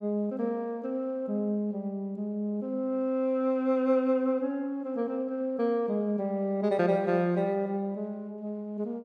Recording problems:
none

